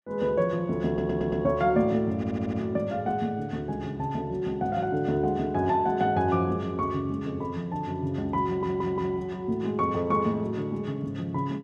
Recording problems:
stutter; at 1 s, at 2 s and at 8.5 s

